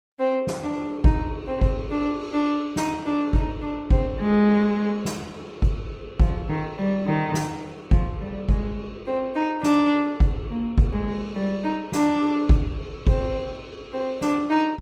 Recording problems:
lossy codec; Opus, log-spectral distance 2 dB, nothing above 18.5 kHz

